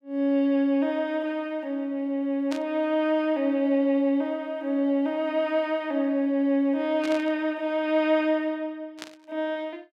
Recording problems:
burst of static; at 2.5 s, at 7 s and at 9 s; peak -7 dB vs average level

